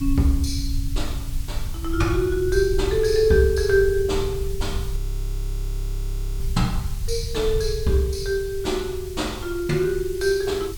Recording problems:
hiss; slope +1 dB per octave, SNR 19 dB
low-frequency rumble; below 78 Hz, SNR 7 dB
frozen audio; at 5 s for 1.5 s

